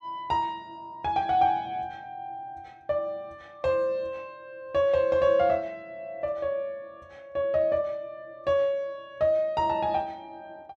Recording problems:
none

